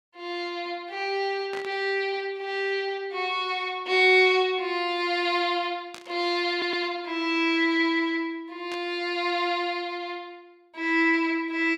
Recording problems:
burst of static; at 1.5 s, at 6 s and at 8.5 s; peak -10 dB vs average level
stutter; at 6.5 s

